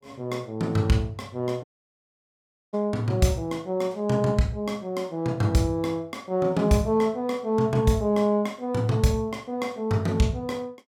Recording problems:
dropout; at 1.5 s for 1 s

